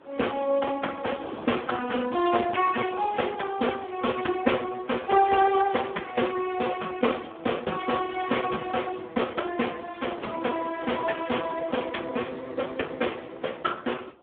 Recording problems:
telephone audio; 260 Hz to 3.5 kHz, Speex
wind on the microphone; below 970 Hz, SNR 22 dB

